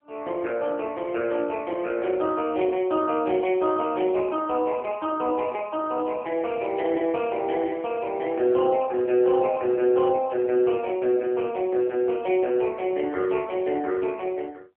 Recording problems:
phone line; 260 Hz to 3.2 kHz, AMR-NB

